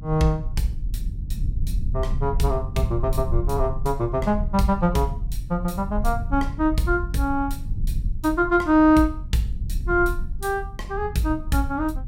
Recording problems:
rumble; below 76 Hz, SNR 7 dB

